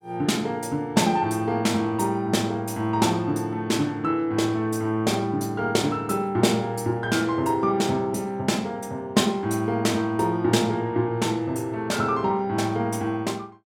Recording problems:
none

